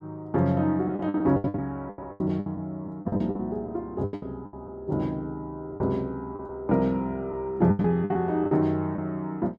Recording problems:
lost packets; 13% of the sound replaced, filled with the last packet

